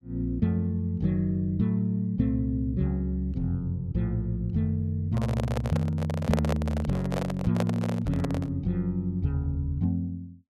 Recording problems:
handling noise; from 5 to 8.5 s; peak +4 dB vs average level

